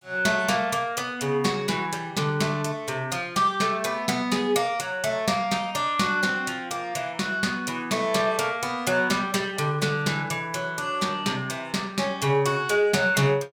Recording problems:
none

